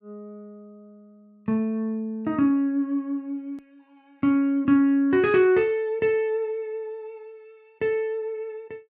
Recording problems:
edit click; at 3.5 s

